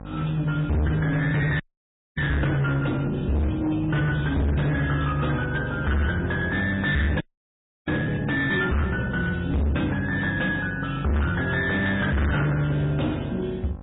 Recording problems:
treble cut off; nothing above 3.8 kHz
codec artefacts; MP3, log-spectral distance 3 dB
distortion; hard clipping, signal-to-distortion ratio 6 dB
hum; 50 Hz, harmonics up to 1.1 kHz, SNR 16 dB
audio freezing; at 1.5 s for 0.5 s and at 7 s for 0.5 s

